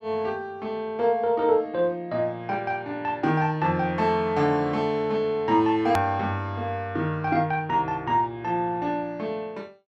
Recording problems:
click at an edit; at 6 s

